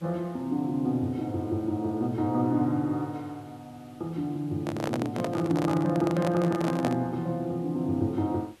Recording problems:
hiss; slope -2 dB per octave, SNR 29 dB
handling noise; from 4.5 to 7 s; peak +1 dB vs average level

